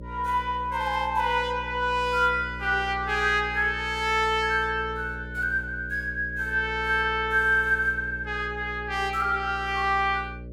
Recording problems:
hum; 60 Hz, harmonics up to 600 Hz, SNR 14 dB

